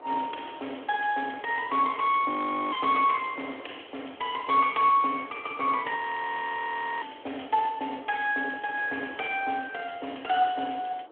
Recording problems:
phone line; 260 Hz to 3.4 kHz, Speex
wind on the microphone; below 950 Hz, SNR 22 dB
frozen audio; at 2.5 s and at 6 s for 1 s

